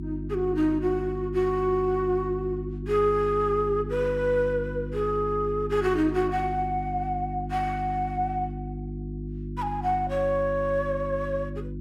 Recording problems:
electrical hum; 50 Hz, harmonics up to 350 Hz, SNR 8 dB

